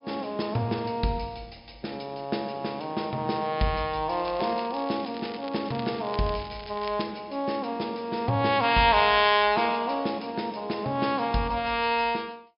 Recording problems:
treble cut off; nothing above 5.5 kHz
crackle; from 4 to 7 s and at 9 s; loose cable, SNR 18 dB

